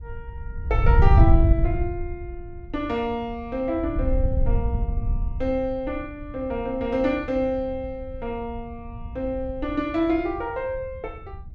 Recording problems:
wind noise; below 92 Hz, SNR -3 dB

